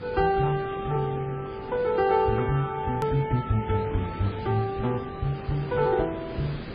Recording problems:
codec artefacts; MP3, then Vorbis, log-spectral distance 5 dB, nothing above 14.1 kHz
background hiss; SNR 12 dB
edit click; at 3 s

